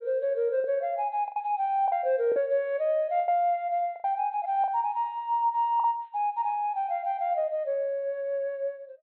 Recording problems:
low-pass filter; nothing above 4.2 kHz
lost packets; 5% of the sound replaced, filled with the last packet

